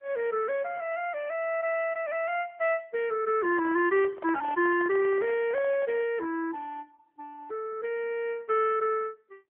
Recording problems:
phone line; 300 Hz to 3.2 kHz, AMR-NB
microphone handling noise; from 3.5 to 6 s; peak -11 dB vs average level

